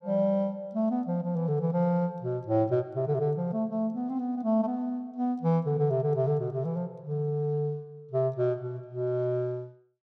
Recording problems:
none

